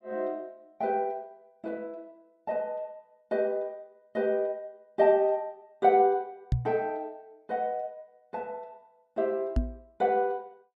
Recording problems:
microphone bump; at 6.5 s and at 9.5 s; peak +6 dB vs average level

